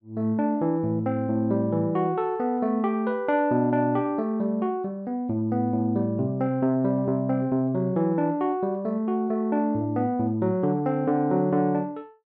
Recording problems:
none

